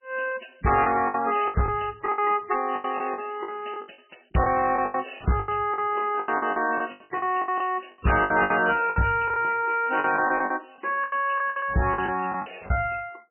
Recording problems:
codec artefacts; MP3, log-spectral distance 7 dB, nothing above 2.7 kHz
distorted audio; hard clipping, uneven, signal-to-distortion ratio 10 dB
lost packets; 15% of the sound replaced, filled with the last packet

